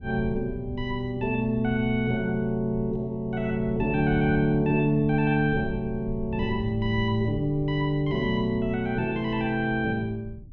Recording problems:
rumble; below 120 Hz, SNR 14 dB

